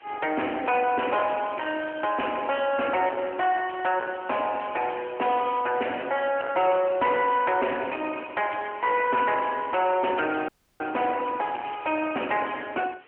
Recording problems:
phone line; 280 Hz to 3.1 kHz, AMR-NB
distorted audio; soft clipping, signal-to-distortion ratio 9 dB
background hiss; SNR 27 dB
audio cutting out; at 10 s

